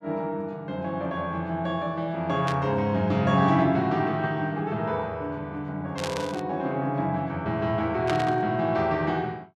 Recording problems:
burst of static; at 2.5 s, at 6 s and at 8 s; peak -2 dB vs average level

